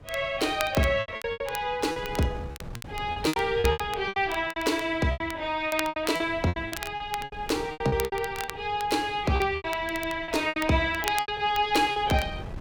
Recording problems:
wind on the microphone; below 260 Hz, SNR 18 dB
crackle; vinyl, SNR 14 dB
packet loss; 15% of the sound replaced, filled with repeated pitch periods

